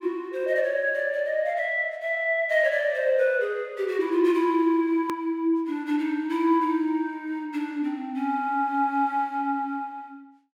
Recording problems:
click at an edit; at 5 s

